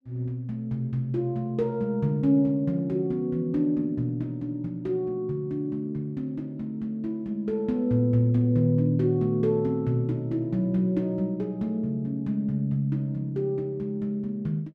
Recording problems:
none

